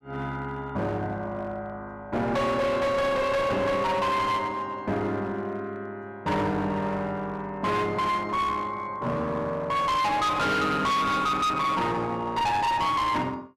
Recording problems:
distorted audio; hard clipping, uneven, signal-to-distortion ratio 6 dB

